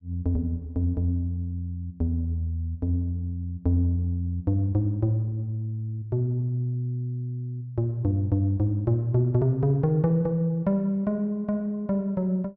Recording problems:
none

